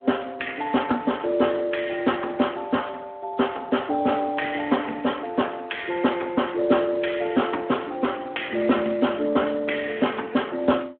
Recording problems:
telephone audio; 190 Hz to 3.3 kHz, Speex

